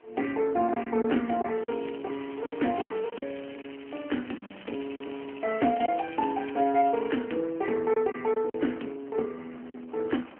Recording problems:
telephone audio; 190 Hz to 3.1 kHz, AMR-NB
wind on the microphone; below 1.7 kHz, SNR 23 dB
lost packets; 6% of the sound replaced, filled with silence
crackling; from 1.5 to 7 s; loose cable, SNR 18 dB

